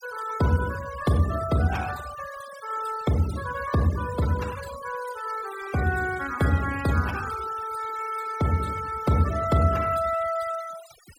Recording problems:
noise reduction artefacts; signal-to-artefact ratio 15 dB

